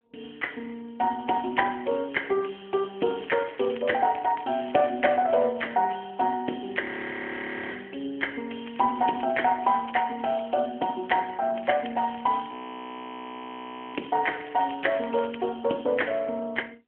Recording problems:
phone line; 220 Hz to 3.3 kHz, AMR-NB
crackling; from 3 to 5 s, from 8.5 to 10 s and from 12 to 15 s; loose cable, SNR 21 dB
audio freezing; at 7 s for 1 s and at 13 s for 1.5 s

